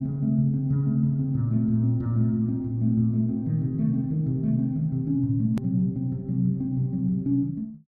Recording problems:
click at an edit; at 5.5 s

